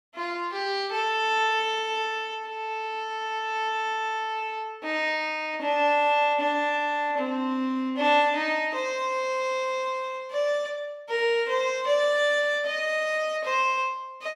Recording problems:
none

